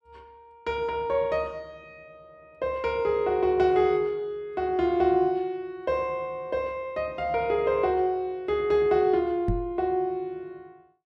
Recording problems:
microphone thump; at 9.5 s; peak +2 dB vs average level

